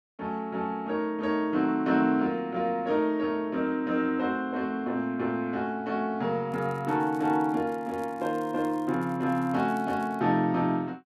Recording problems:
crackle; from 6.5 to 10 s; loose cable, SNR 29 dB

